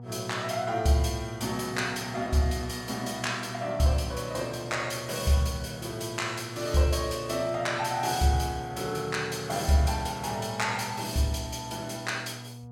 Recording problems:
hum; 60 Hz, harmonics up to 960 Hz, SNR 14 dB

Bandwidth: 18 kHz